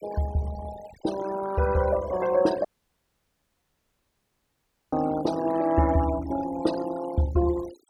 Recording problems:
denoising artefacts; signal-to-artefact ratio 15 dB
audio cutting out; at 2.5 s for 2.5 s

